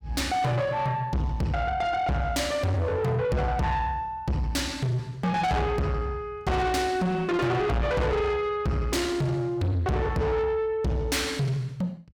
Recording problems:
distortion; soft clipping, signal-to-distortion ratio 6 dB

